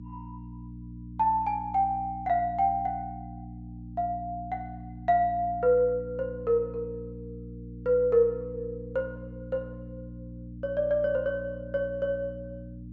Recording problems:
treble cut off; nothing above 8 kHz
hum; 60 Hz, harmonics up to 300 Hz, SNR 14 dB

